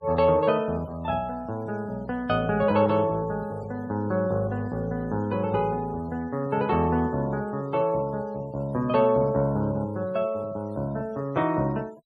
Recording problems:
denoising artefacts; signal-to-artefact ratio 27 dB

